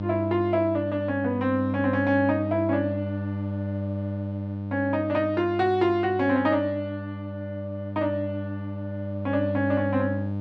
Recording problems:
electrical hum; 50 Hz, harmonics up to 900 Hz, SNR 7 dB

